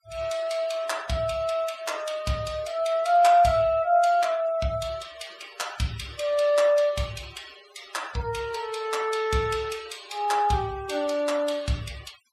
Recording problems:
noise reduction artefacts; signal-to-artefact ratio 21 dB

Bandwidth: 14.5 kHz